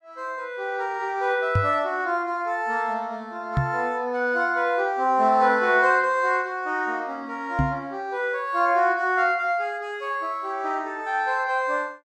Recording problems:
microphone thump; at 1.5 s, at 3.5 s and at 7.5 s; peak +4 dB vs average level

